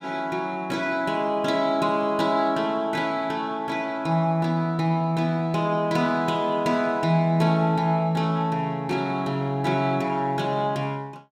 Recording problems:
none

